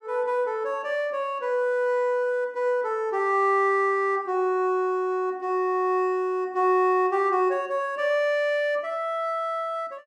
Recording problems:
none

